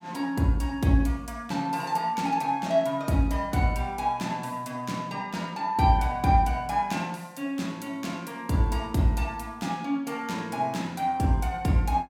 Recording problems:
none

